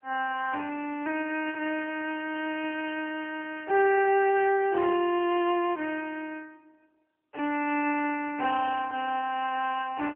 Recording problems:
telephone audio; 300 Hz to 3.1 kHz, AMR-NB

